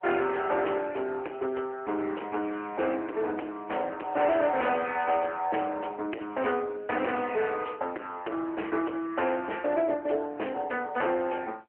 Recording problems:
phone line; 280 Hz to 3 kHz, AMR-NB
distorted audio; hard clipping, uneven, signal-to-distortion ratio 8 dB

